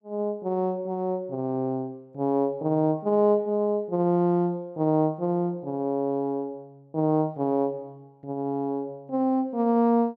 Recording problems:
none

